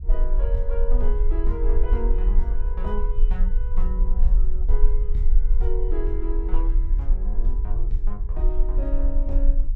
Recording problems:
rumble; below 40 Hz, strongest tone 18 Hz, SNR -9 dB

